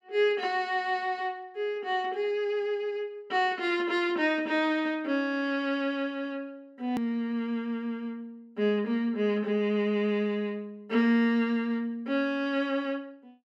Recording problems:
click at an edit; at 7 s

